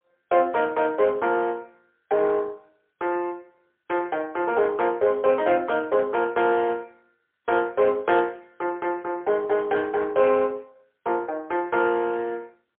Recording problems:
phone line; 320 Hz to 2.6 kHz, AMR-NB, then MP3

